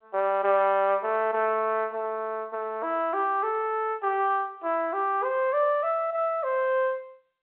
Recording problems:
phone line; 280 Hz to 3.5 kHz, G.711

